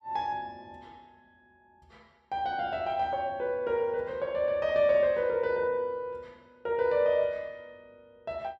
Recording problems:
none

